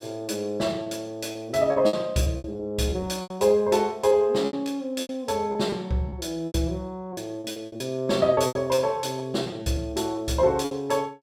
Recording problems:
packet loss; 12% of the sound replaced, filled with repeated pitch periods

